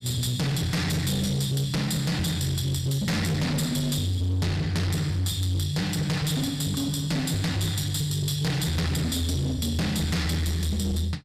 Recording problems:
distorted audio; hard clipping, uneven, signal-to-distortion ratio 7 dB

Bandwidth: 14.5 kHz